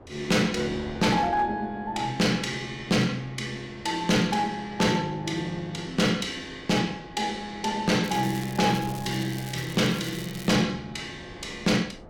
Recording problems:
distortion; hard clipping, uneven, signal-to-distortion ratio 11 dB
wind on the microphone; below 570 Hz, SNR 20 dB
crackling; from 8 to 11 s; loose cable, SNR 16 dB

